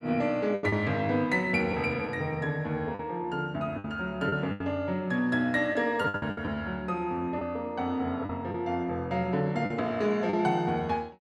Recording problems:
lost packets; 6% of the sound replaced, filled with the last packet

